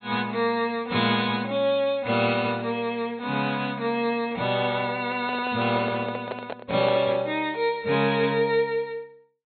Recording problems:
treble cut off; nothing above 4.3 kHz
microphone handling noise; from 5 to 7 s; peak -1 dB vs average level

